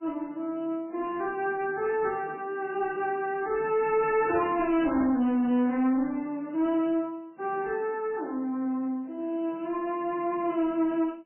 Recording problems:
lossy compression; MP3, log-spectral distance 2 dB, nothing above 2.7 kHz
distorted audio; soft clipping, signal-to-distortion ratio 10 dB

